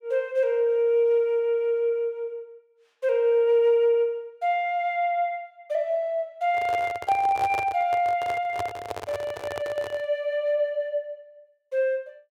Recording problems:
handling noise; from 6.5 to 10 s; peak -4 dB vs average level

